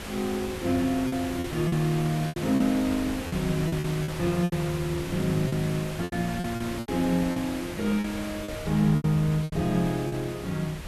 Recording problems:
background hiss; slope -3 dB per octave, SNR 10 dB
wind on the microphone; below 130 Hz, SNR 16 dB
lost packets; 10% of the sound replaced, filled with repeated pitch periods

